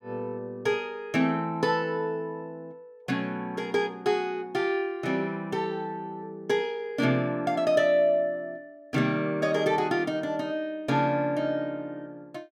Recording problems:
none

